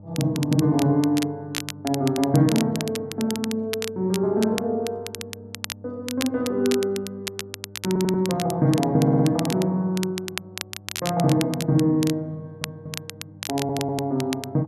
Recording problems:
hum; 50 Hz, harmonics up to 900 Hz, SNR 22 dB
crackle; vinyl, SNR 11 dB
audio stuttering; 4 times, first at 8 s

